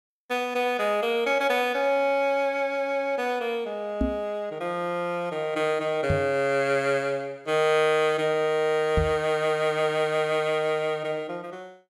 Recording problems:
microphone thump; at 4 s, at 6 s and at 9 s; peak +3 dB vs average level

